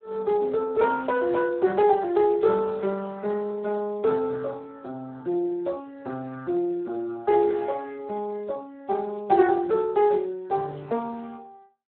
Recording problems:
phone line; 170 Hz to 3 kHz, Speex

